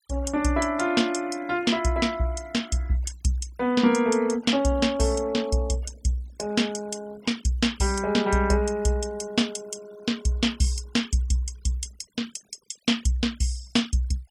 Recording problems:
noise reduction artefacts; signal-to-artefact ratio 22 dB

